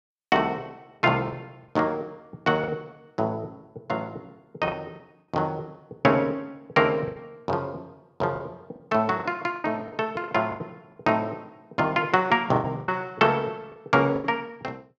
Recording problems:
packet loss; 7% of the sound replaced, filled with the last packet

